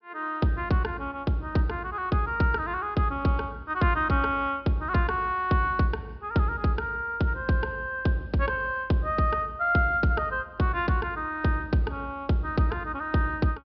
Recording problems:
treble missing; nothing above 5.5 kHz

